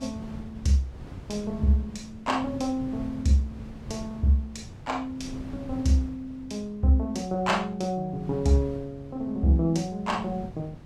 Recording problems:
wind noise; below 230 Hz, SNR 15 dB

